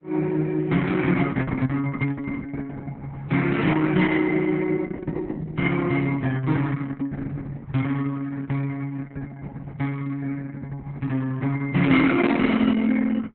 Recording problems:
lossy compression; Opus, log-spectral distance 3 dB

